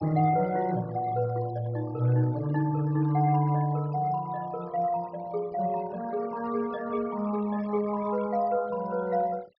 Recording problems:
low-pass filter; nothing above 5.5 kHz
denoising artefacts; signal-to-artefact ratio 21 dB

